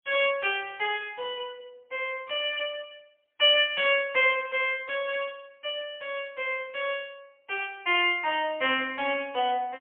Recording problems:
telephone audio; 320 Hz to 3.3 kHz, AMR-NB, then MP3

